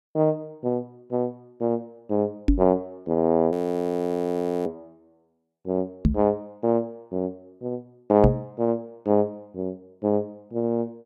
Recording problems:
microphone bump; at 2.5 s, at 6 s and at 8 s; peak +9 dB vs average level
frozen audio; at 3.5 s for 1 s

